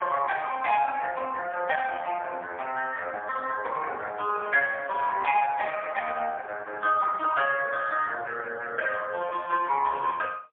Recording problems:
telephone audio; 340 Hz to 3.1 kHz, AMR-NB, then MP3

